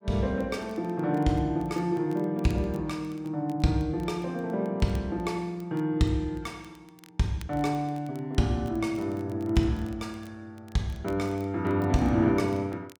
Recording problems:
crackling; vinyl, SNR 29 dB

